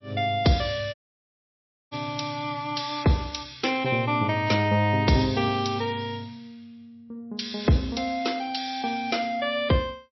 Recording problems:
codec artefacts; MP3, log-spectral distance 5 dB, nothing above 5.7 kHz
audio cutting out; at 1 s for 1 s

